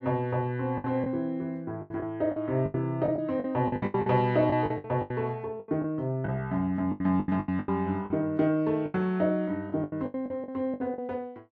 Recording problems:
packet loss; 15% of the sound replaced, filled with the last packet

